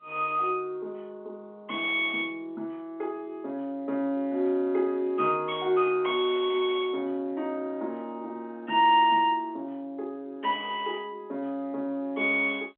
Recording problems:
phone line; 190 Hz to 3.3 kHz, G.711

